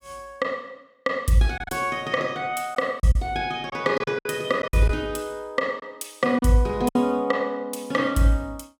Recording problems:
lost packets; 6% of the sound replaced, filled with silence

